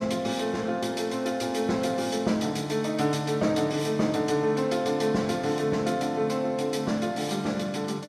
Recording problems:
none

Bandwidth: 14 kHz